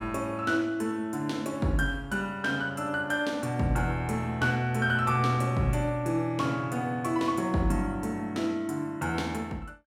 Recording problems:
none

